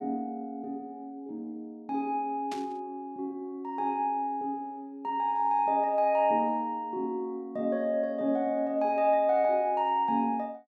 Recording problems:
static burst; at 2.5 s; peak -9 dB vs average level

